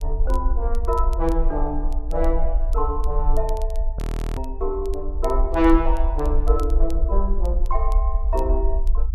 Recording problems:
rumble; below 50 Hz, SNR -1 dB
crackle; vinyl, SNR 25 dB
audio freezing; at 4 s

